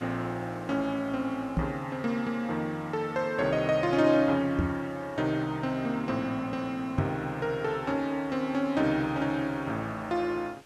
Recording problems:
background hiss; slope -2 dB per octave, SNR 26 dB
microphone bump; at 1.5 s, at 4.5 s and at 7 s; peak +5 dB vs average level

